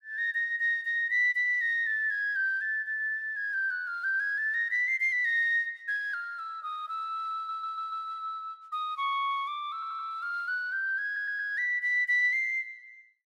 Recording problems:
stutter; at 7.5 s, at 9.5 s and at 11 s

